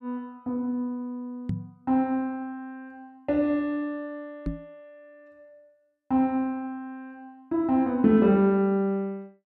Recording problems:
knock on the microphone; at 1.5 s and at 4.5 s; peak 0 dB vs average level

